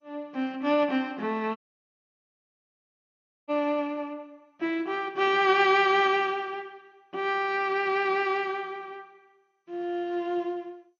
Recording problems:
lossy compression; MP2, log-spectral distance 2 dB, nothing above 6.7 kHz
dropout; at 1.5 s for 2 s

